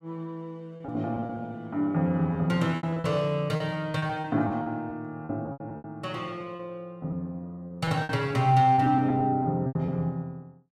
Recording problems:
packet loss; 11% of the sound replaced, filled with repeated pitch periods

